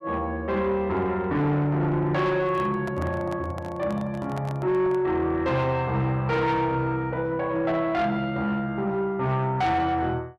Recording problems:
distortion; soft clipping, signal-to-distortion ratio 11 dB
handling noise; from 2.5 to 5 s; peak -7 dB vs average level

